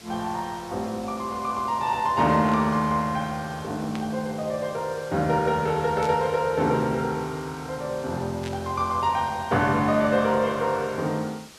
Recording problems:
hiss; slope -1 dB per octave, SNR 20 dB
burst of static; 4 times, first at 2.5 s; peak -9 dB vs average level

